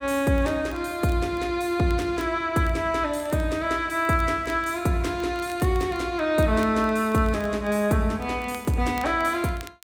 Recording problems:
crackle; vinyl, SNR 26 dB

